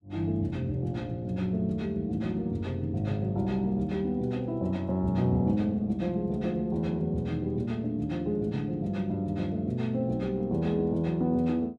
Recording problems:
none

